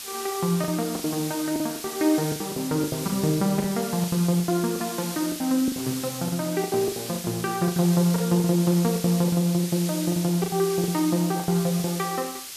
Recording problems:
hiss; slope +3 dB per octave, SNR 9 dB
lost packets; 15% of the sound replaced, filled with the last packet

